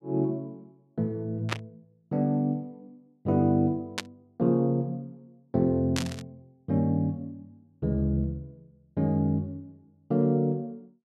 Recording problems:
burst of static; at 1.5 s, at 4 s and at 6 s; peak +2 dB vs average level

